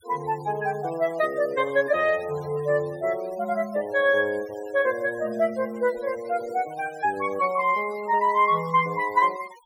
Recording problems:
denoising artefacts; signal-to-artefact ratio 22 dB

